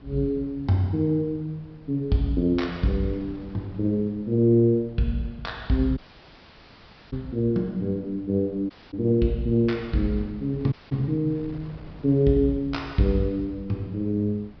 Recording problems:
treble cut off; nothing above 5.5 kHz
wind on the microphone; below 290 Hz, SNR 22 dB
dropout; at 6 s for 1 s, at 8.5 s and at 11 s

